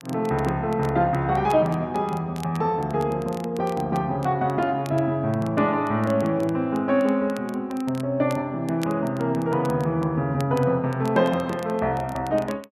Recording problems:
crackling; vinyl, SNR 23 dB

